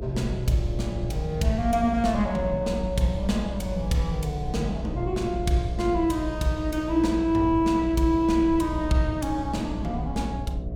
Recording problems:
hum; 60 Hz, harmonics up to 720 Hz, SNR 10 dB
low-frequency rumble; below 94 Hz, SNR 11 dB

